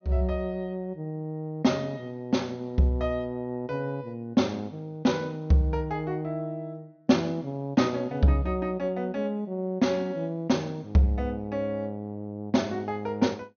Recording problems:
treble missing; nothing above 6.4 kHz

